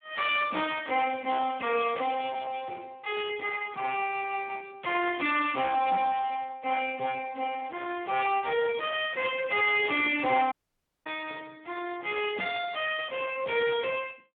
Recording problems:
phone line; 220 Hz to 3.4 kHz, Speex
distorted audio; soft clipping, signal-to-distortion ratio 12 dB
dropout; at 11 s for 0.5 s

